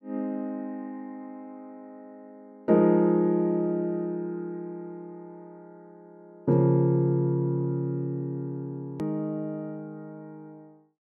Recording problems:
click at an edit; at 9 s

